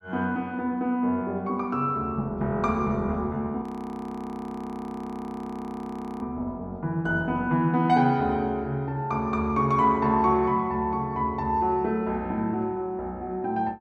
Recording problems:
audio freezing; at 3.5 s for 2.5 s

